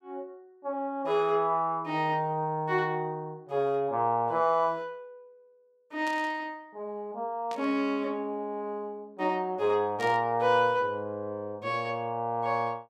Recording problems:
static burst; at 6 s, at 7.5 s and at 10 s; peak -9 dB vs average level

